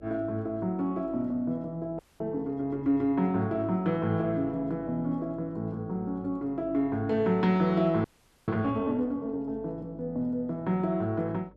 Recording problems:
hum; 50 Hz, harmonics up to 600 Hz, SNR 26 dB
frozen audio; at 2 s and at 8 s

